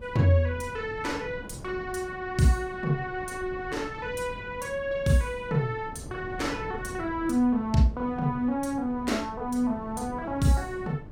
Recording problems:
wind noise; below 290 Hz, SNR 15 dB

